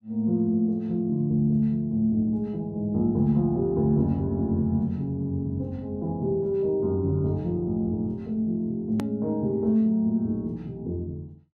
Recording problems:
click at an edit; at 9 s

